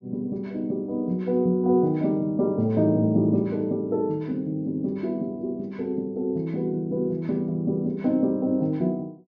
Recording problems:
low-pass filter; nothing above 6.6 kHz

